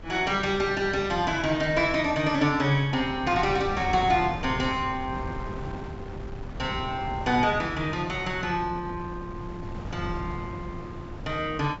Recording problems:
treble missing; nothing above 8 kHz
wind on the microphone; below 300 Hz, SNR 12 dB

